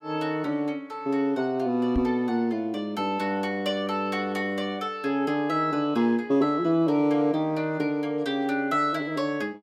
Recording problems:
knock on the microphone; at 2 s; peak +2 dB vs average level

